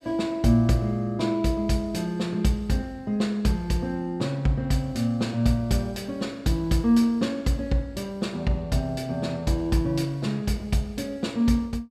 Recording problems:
none

